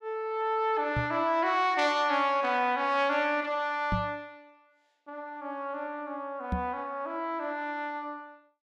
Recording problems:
microphone bump; at 1 s, at 4 s and at 6.5 s; peak +1 dB vs average level

